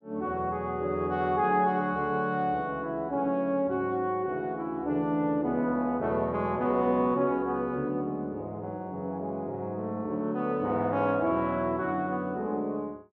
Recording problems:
none

